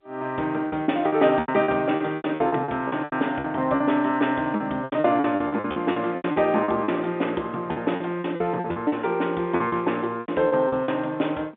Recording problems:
phone line; 220 Hz to 3.6 kHz, G.711
packet loss; 16% of the sound replaced, filled with repeated pitch periods

